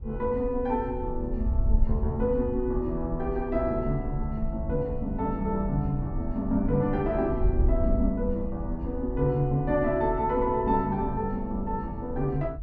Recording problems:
wind noise; below 68 Hz, SNR 6 dB

